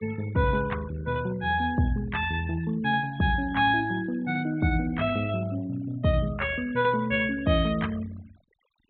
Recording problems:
treble cut off; nothing above 4 kHz
noise reduction artefacts; signal-to-artefact ratio 21 dB

